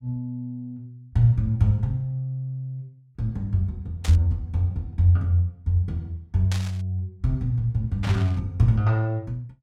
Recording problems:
burst of static; at 4 s, at 6.5 s and at 8 s; peak -5 dB vs average level

